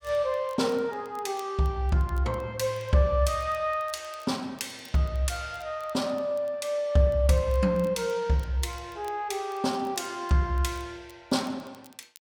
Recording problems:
crackling; vinyl, SNR 28 dB

